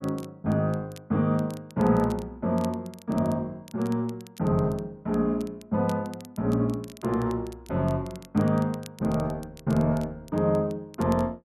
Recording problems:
crackling; vinyl, SNR 24 dB

